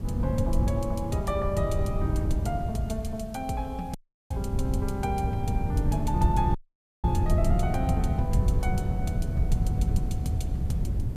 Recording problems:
hiss; slope -1 dB per octave, SNR 27 dB
wind noise; below 120 Hz, SNR -3 dB
audio cutting out; at 4 s and at 6.5 s

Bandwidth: 14.5 kHz